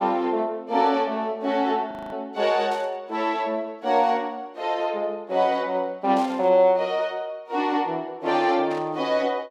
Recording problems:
frozen audio; at 2 s
static burst; at 2.5 s, at 6 s and at 8.5 s; peak -13 dB vs average level

